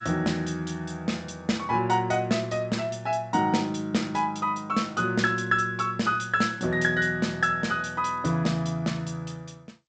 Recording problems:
lossy compression; G.722, log-spectral distance 3 dB, nothing above 7.6 kHz

